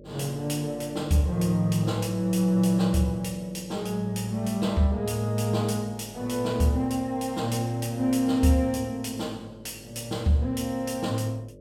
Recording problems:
hum; 50 Hz, harmonics up to 600 Hz, SNR 21 dB

